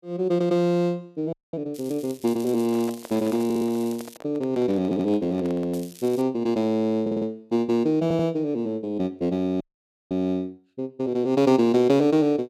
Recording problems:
frozen audio; at 1.5 s and at 9.5 s for 0.5 s
crackle; from 1.5 to 4 s and at 5.5 s; loose cable, SNR 21 dB
microphone handling noise; from 2.5 to 6 s; peak -10 dB vs average level
stutter; 4 times, first at 3.5 s

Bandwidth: 14 kHz